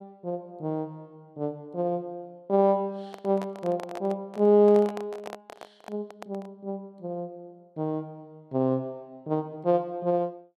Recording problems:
handling noise; from 3 to 6.5 s; peak -6 dB vs average level

